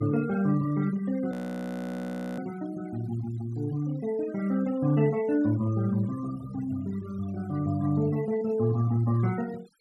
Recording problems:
noise reduction artefacts; signal-to-artefact ratio 20 dB
frozen audio; at 1.5 s for 1 s

